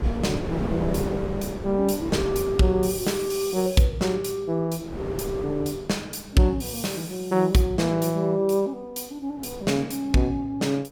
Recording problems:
wind noise; below 470 Hz, SNR 8 dB

